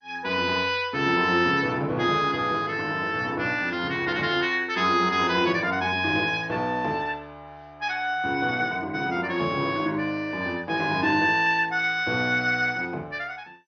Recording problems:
lossy compression; MP2, log-spectral distance 3 dB, nothing above 5.3 kHz

